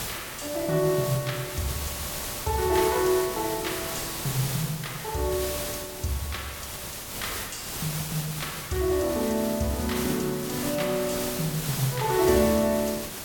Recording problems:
hiss; slope -2 dB per octave, SNR 5 dB

